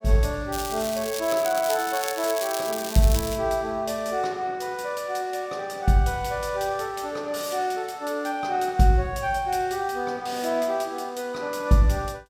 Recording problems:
crackle; from 0.5 to 3.5 s; loose cable, SNR 8 dB

